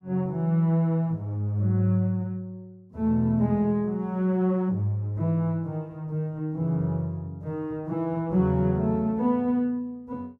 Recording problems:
none

